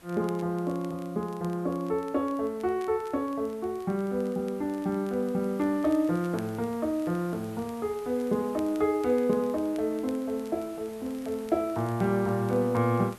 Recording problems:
background hiss; slope -3 dB per octave, SNR 22 dB
crackling; vinyl, SNR 28 dB

